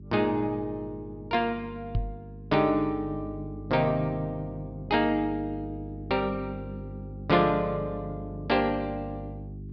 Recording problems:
treble missing; nothing above 5.5 kHz
mains hum; 50 Hz, harmonics up to 400 Hz, SNR 12 dB
microphone bump; at 2 s; peak +4 dB vs average level

